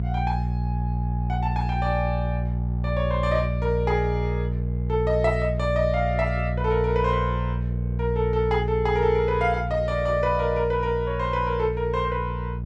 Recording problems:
hum; 60 Hz, harmonics up to 420 Hz, SNR 2 dB

